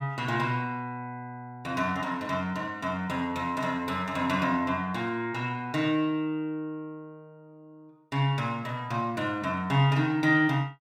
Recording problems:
none

